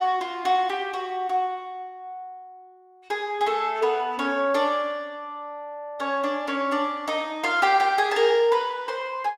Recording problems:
none

